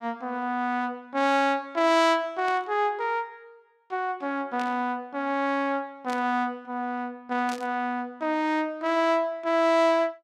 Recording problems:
static burst; 4 times, first at 2.5 s; peak -9 dB vs average level

